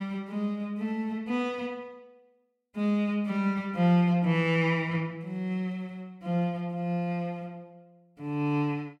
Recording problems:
none

